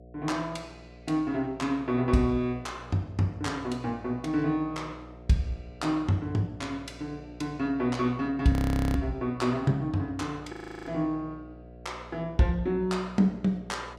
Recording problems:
hum; 60 Hz, harmonics up to 720 Hz, SNR 19 dB
frozen audio; at 8.5 s and at 11 s

